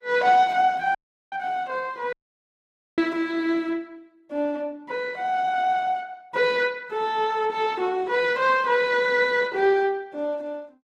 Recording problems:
lossy codec; Opus, log-spectral distance 2 dB
audio cutting out; at 1 s and at 2 s for 1 s

